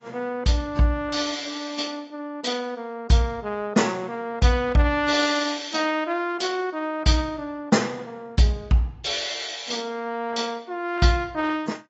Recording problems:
lossy compression; AAC, log-spectral distance 3 dB, nothing above 7.3 kHz

